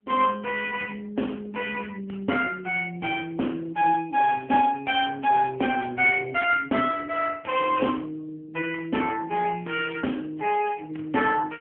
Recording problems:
telephone audio; 220 Hz to 3.1 kHz, AMR-NB

